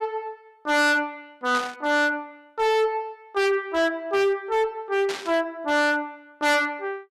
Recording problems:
distorted audio; hard clipping, signal-to-distortion ratio 6 dB
burst of static; at 1.5 s and at 5 s; peak -5 dB vs average level

